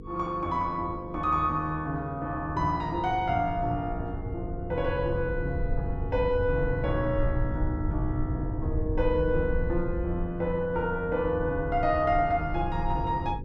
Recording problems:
hum; 50 Hz, harmonics up to 500 Hz, SNR 14 dB
low-frequency rumble; below 86 Hz, SNR 6 dB

